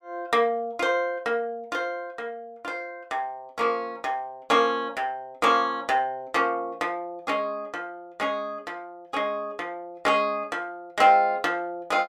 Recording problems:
none

